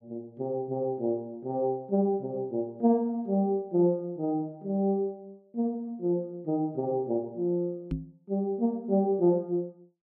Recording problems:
microphone bump; at 8 s; peak +1 dB vs average level

